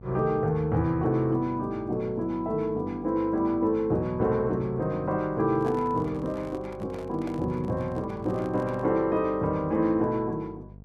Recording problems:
mains hum; 50 Hz, harmonics up to 700 Hz, SNR 19 dB
handling noise; from 5.5 to 9 s; peak -11 dB vs average level

